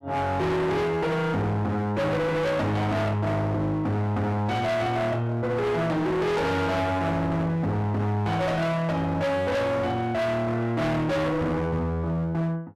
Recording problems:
distorted audio; hard clipping, signal-to-distortion ratio 6 dB

